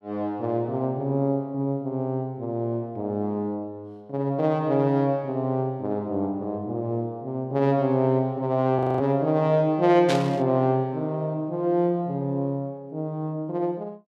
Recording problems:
audio freezing; at 9 s
static burst; at 10 s; peak 0 dB vs average level

